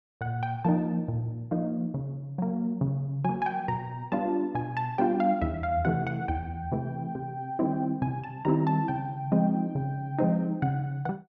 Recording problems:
none

